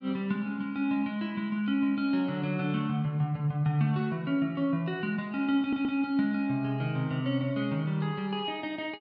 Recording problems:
stutter; at 5.5 s

